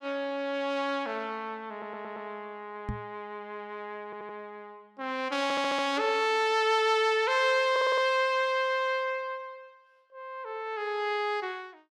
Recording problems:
audio stuttering; 4 times, first at 1.5 s
microphone bump; at 3 s; peak -3 dB vs average level

